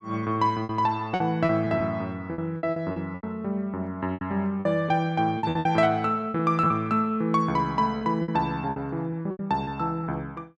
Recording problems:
lost packets; 11% of the sound replaced, filled with repeated pitch periods

